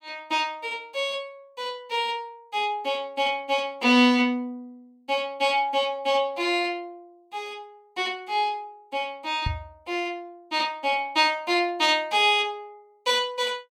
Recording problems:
microphone thump; at 9.5 s; peak 0 dB vs average level

